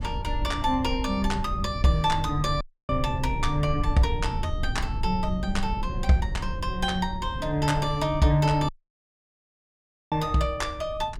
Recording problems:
low-frequency rumble; below 86 Hz, SNR 7 dB
audio cutting out; at 2.5 s and at 8.5 s for 1.5 s

